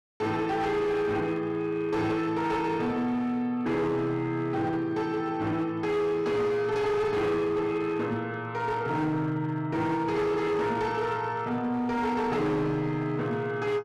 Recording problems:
distorted audio; hard clipping, signal-to-distortion ratio 11 dB

